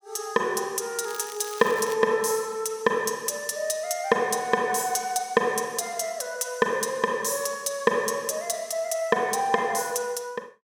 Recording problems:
crackling; at 1 s; loose cable, SNR 16 dB

